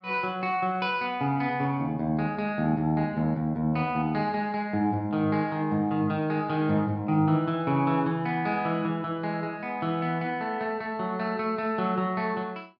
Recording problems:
none

